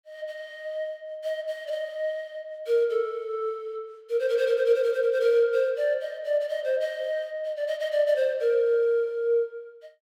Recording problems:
none

